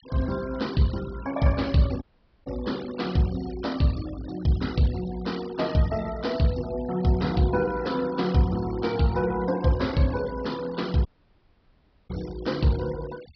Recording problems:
treble missing; nothing above 5.5 kHz
denoising artefacts; signal-to-artefact ratio 18 dB
dropout; at 2 s and at 11 s for 1 s

